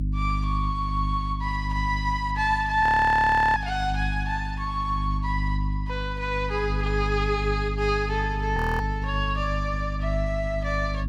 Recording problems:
electrical hum; 50 Hz, harmonics up to 300 Hz, SNR 4 dB
frozen audio; at 3 s for 0.5 s and at 8.5 s

